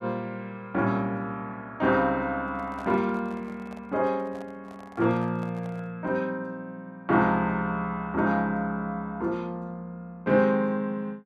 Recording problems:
handling noise; from 2.5 to 6 s; peak -12 dB vs average level

